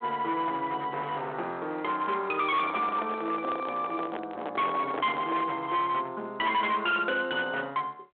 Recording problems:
phone line; 280 Hz to 3.5 kHz, G.726
distortion; hard clipping, signal-to-distortion ratio 11 dB
microphone handling noise; from 2.5 to 5.5 s; peak -2 dB vs average level

